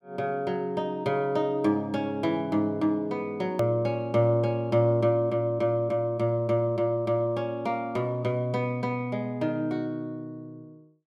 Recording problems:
hard cut with a click; at 3.5 s

